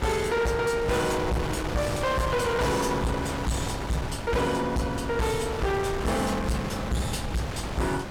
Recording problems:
distorted audio; hard clipping, signal-to-distortion ratio 6 dB
wind on the microphone; below 1.2 kHz, SNR 6 dB

